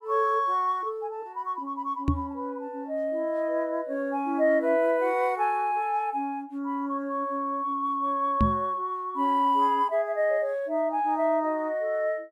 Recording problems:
microphone thump; at 2 s and at 8.5 s; peak +6 dB vs average level

